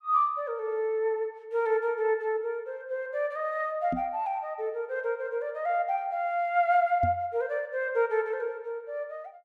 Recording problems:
microphone bump; at 4 s and at 7 s; peak +1 dB vs average level

